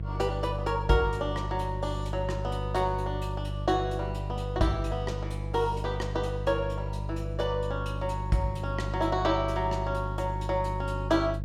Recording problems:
hum; 50 Hz, harmonics up to 500 Hz, SNR 4 dB

